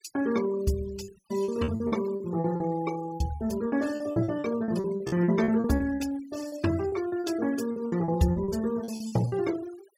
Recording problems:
noise reduction artefacts; signal-to-artefact ratio 17 dB
lost packets; 15% of the sound replaced, filled with repeated pitch periods

